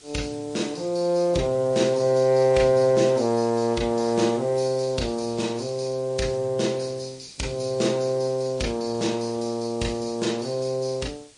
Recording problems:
lossy compression; Vorbis, then MP3, log-spectral distance 4 dB
background hiss; SNR 24 dB

